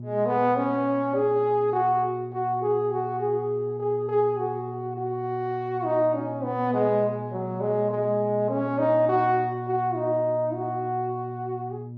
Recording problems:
electrical hum; 60 Hz, harmonics up to 600 Hz, SNR 12 dB

